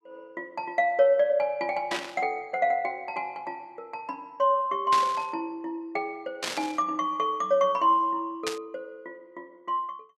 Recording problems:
burst of static; 4 times, first at 2 s; peak 0 dB vs average level

